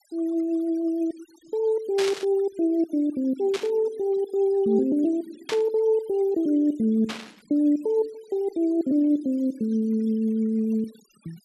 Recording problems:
denoising artefacts; signal-to-artefact ratio 28 dB
burst of static; 4 times, first at 2 s; peak -3 dB vs average level

